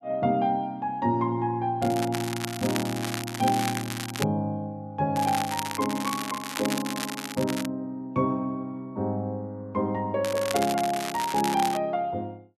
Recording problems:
crackling; from 2 to 4.5 s, from 5 to 7.5 s and from 10 to 12 s; loose cable, SNR 6 dB

